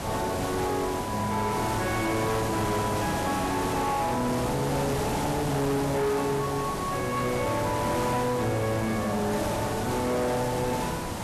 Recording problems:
distorted audio; hard clipping, signal-to-distortion ratio 11 dB
background hiss; SNR 3 dB

